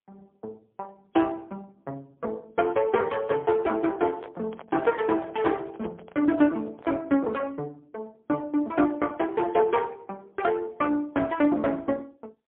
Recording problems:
telephone audio; 240 Hz to 3.5 kHz, AMR-NB, then MP3
microphone handling noise; from 4 to 7 s; peak -10 dB vs average level

